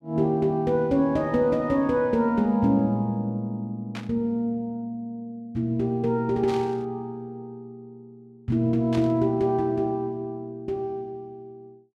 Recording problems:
static burst; at 4 s, at 6.5 s and at 9 s; peak -8 dB vs average level

